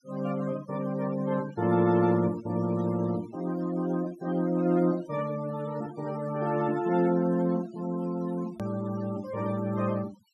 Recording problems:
noise reduction artefacts; signal-to-artefact ratio 20 dB
click at an edit; at 8.5 s

